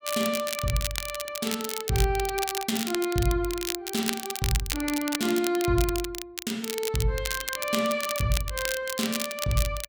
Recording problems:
crackling; vinyl, SNR 4 dB

